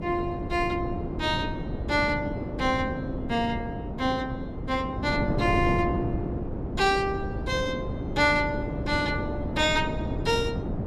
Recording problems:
mains hum; 60 Hz, harmonics up to 540 Hz, SNR 20 dB
wind on the microphone; below 340 Hz, SNR 4 dB

